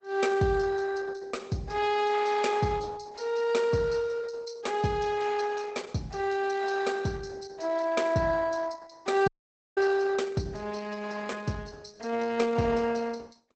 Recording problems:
codec artefacts; Opus, log-spectral distance 5 dB, nothing above 8 kHz
dropout; at 9.5 s

